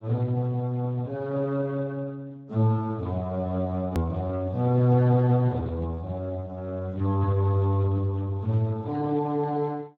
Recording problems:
codec artefacts; Speex, log-spectral distance 2 dB, nothing above 17.7 kHz
click at an edit; at 4 s

